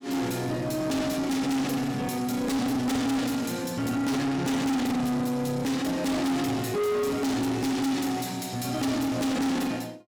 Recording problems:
distortion; soft clipping, signal-to-distortion ratio 6 dB

